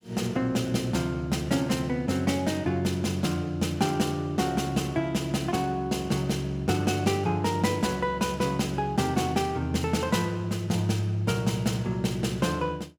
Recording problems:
none

